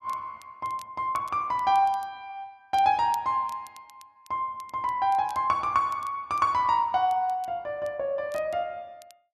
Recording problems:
crackling; vinyl, SNR 27 dB

